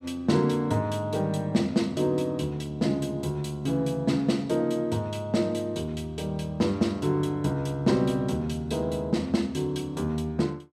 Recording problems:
none

